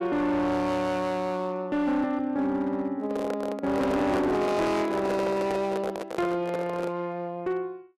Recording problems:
distorted audio; hard clipping, signal-to-distortion ratio 10 dB
microphone handling noise; from 3 to 7 s; peak -1 dB vs average level

